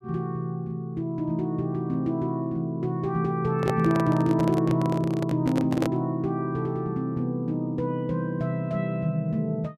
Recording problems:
handling noise; from 3.5 to 6 s; peak +1 dB vs average level

